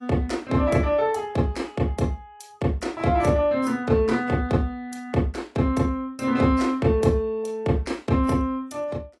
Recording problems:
lossy codec; AAC, log-spectral distance 2 dB, nothing above 11 kHz

